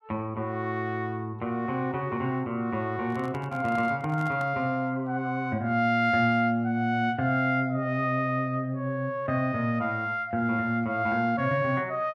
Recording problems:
microphone handling noise; from 3 to 4.5 s; peak -11 dB vs average level

